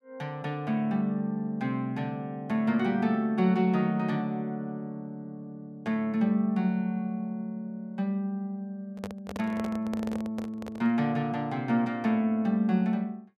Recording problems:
microphone handling noise; from 9 to 11 s; peak -5 dB vs average level

